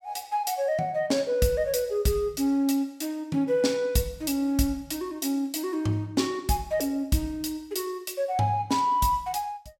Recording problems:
none

